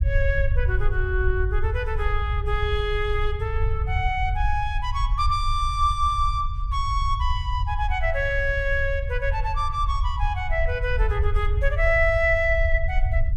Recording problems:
low-frequency rumble; below 70 Hz, SNR 2 dB

